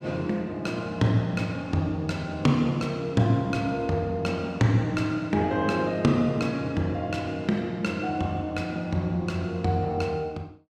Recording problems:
none

